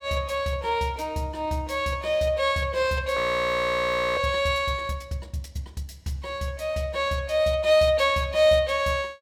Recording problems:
frozen audio; at 3 s for 1 s

